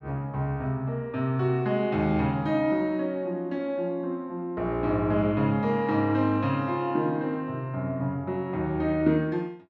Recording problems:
none

